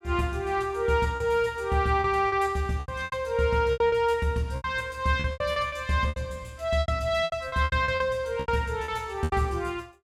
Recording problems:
lost packets; 13% of the sound replaced, filled with repeated pitch periods

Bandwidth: 16.5 kHz